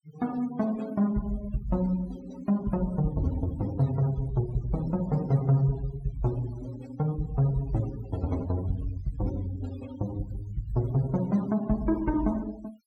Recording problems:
noise reduction artefacts; signal-to-artefact ratio 18 dB

